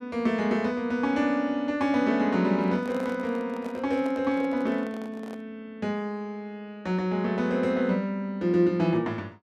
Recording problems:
handling noise; from 2.5 to 5.5 s; peak -10 dB vs average level

